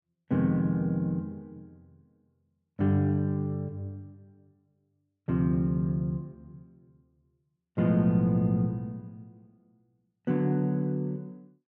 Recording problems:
none

